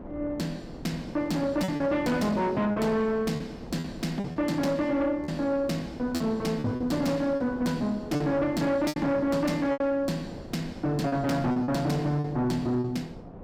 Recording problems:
distorted audio; soft clipping, signal-to-distortion ratio 10 dB
wind on the microphone; below 510 Hz, SNR 16 dB
packet loss; 7% of the sound replaced, filled with repeated pitch periods

